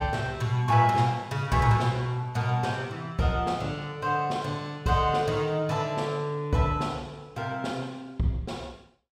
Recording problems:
none

